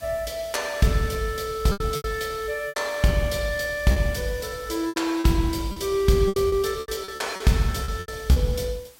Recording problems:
hiss; slope -1 dB per octave, SNR 22 dB
packet loss; 10% of the sound replaced, filled with repeated pitch periods

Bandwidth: 16 kHz